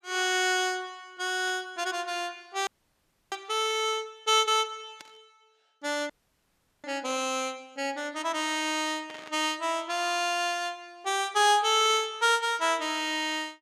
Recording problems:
static burst; 5 times, first at 1.5 s; peak -13 dB vs average level
audio freezing; at 2.5 s for 0.5 s and at 6 s for 0.5 s

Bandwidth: 14.5 kHz